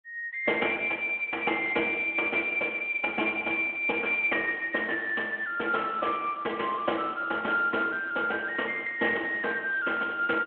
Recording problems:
telephone audio; 240 Hz to 3.2 kHz, Speex

